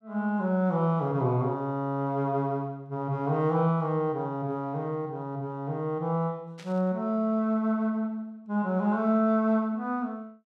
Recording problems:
static burst; at 6.5 s; peak -15 dB vs average level

